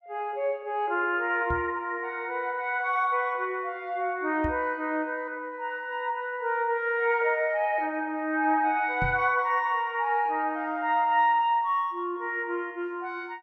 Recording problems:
microphone thump; at 1.5 s, at 4.5 s and at 9 s; peak -2 dB vs average level

